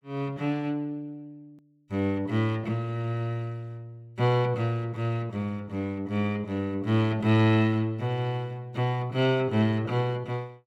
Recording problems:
hard cut with a click; at 1.5 s

